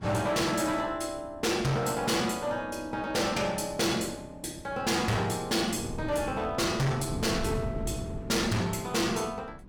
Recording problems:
distorted audio; hard clipping, signal-to-distortion ratio 7 dB
wind on the microphone; below 250 Hz, SNR 13 dB

